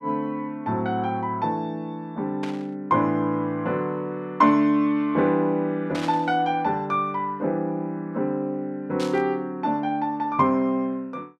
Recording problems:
static burst; at 2.5 s, at 6 s and at 9 s; peak -6 dB vs average level

